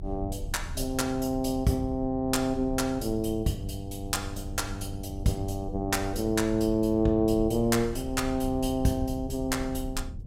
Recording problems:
rumble; below 84 Hz, strongest tone 32 Hz, SNR 12 dB

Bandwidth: 16 kHz